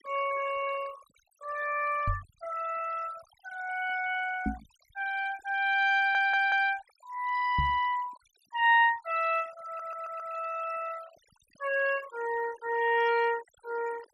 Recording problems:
noise reduction artefacts; signal-to-artefact ratio 19 dB
knock on the microphone; at 2 s, at 4.5 s and at 7.5 s; peak +1 dB vs average level
audio stuttering; at 6 s and at 9.5 s

